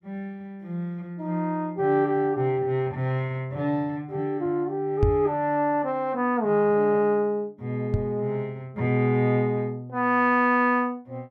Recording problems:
microphone bump; at 5 s and at 8 s; peak +6 dB vs average level

